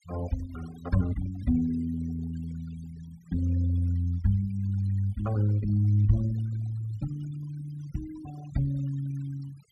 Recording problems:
noise reduction artefacts; signal-to-artefact ratio 19 dB

